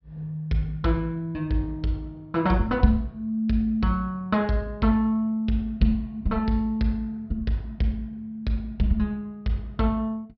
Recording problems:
low-pass filter; nothing above 5.5 kHz

